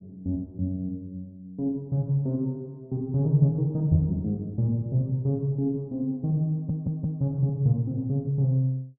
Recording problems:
audio stuttering; at 6.5 s

